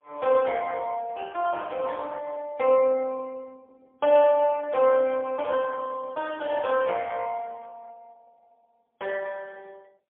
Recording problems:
telephone audio; 300 Hz to 3.4 kHz, AMR-NB, then MP3

